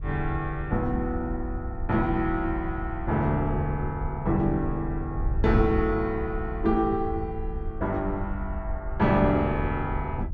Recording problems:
wind noise; below 76 Hz, SNR 7 dB

